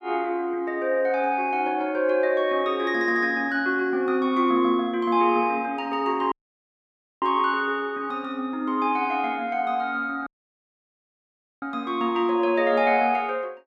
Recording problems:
dropout; at 6.5 s for 1 s and at 10 s for 1.5 s

